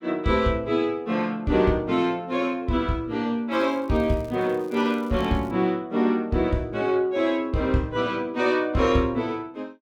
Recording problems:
crackle; from 3.5 to 5.5 s; loose cable, SNR 29 dB

